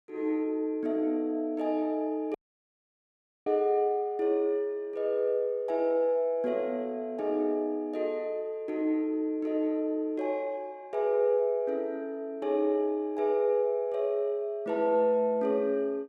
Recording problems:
dropout; at 2.5 s for 1 s

